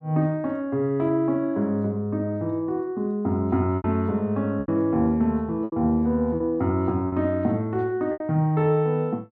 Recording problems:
packet loss; 4% of the sound replaced, filled with repeated pitch periods

